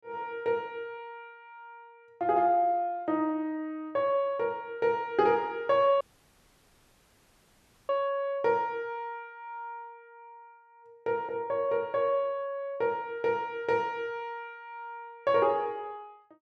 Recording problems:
dropout; at 6 s for 2 s

